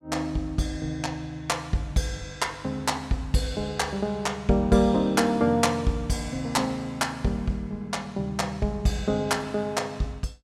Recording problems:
none

